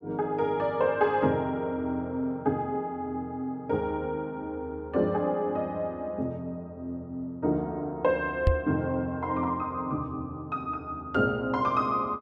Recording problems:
microphone bump; at 8.5 s; peak +9 dB vs average level

